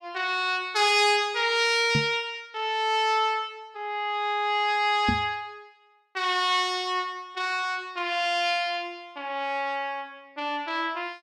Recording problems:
microphone bump; at 2 s and at 5 s; peak +3 dB vs average level

